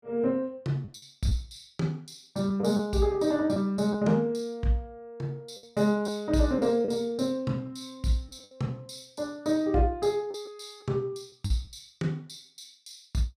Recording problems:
packet loss; 4% of the sound replaced, filled with the last packet

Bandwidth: 14.5 kHz